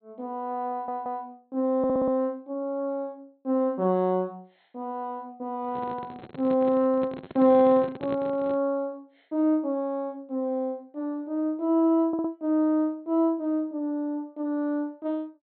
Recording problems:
low-pass filter; nothing above 4.2 kHz
stutter; at 0.5 s, at 2 s and at 12 s
handling noise; from 5.5 to 8.5 s; peak -6 dB vs average level

